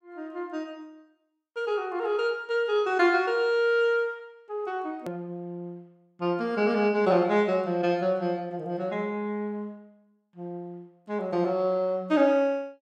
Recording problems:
click at an edit; at 5 s

